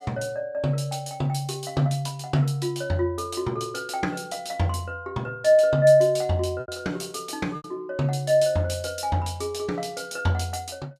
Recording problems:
packet loss; 1.5% of the sound replaced, filled with repeated pitch periods

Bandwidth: 14.5 kHz